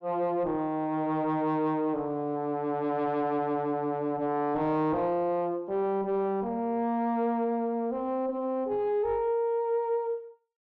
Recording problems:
treble missing; nothing above 8 kHz
distortion; soft clipping, signal-to-distortion ratio 9 dB

